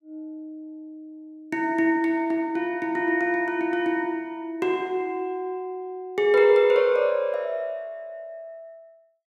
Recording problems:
none

